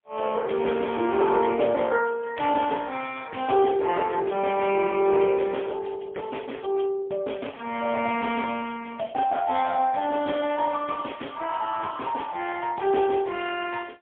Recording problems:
telephone audio; 280 Hz to 3.3 kHz, AMR-NB, then MP3

